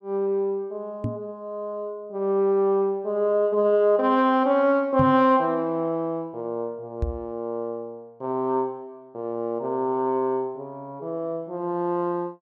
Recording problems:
microphone bump; at 1 s, at 5 s and at 7 s; peak +2 dB vs average level

